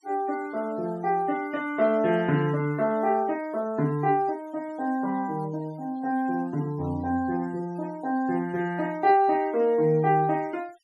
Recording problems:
noise reduction artefacts; signal-to-artefact ratio 25 dB

